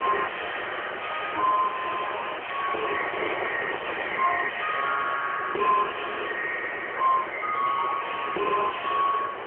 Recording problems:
telephone audio; 340 Hz to 2.5 kHz, AMR-NB
distorted audio; soft clipping, signal-to-distortion ratio 4 dB
background hiss; SNR 12 dB
wind noise; below 1.9 kHz, SNR 8 dB

